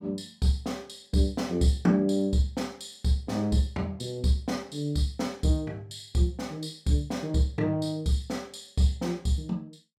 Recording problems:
none

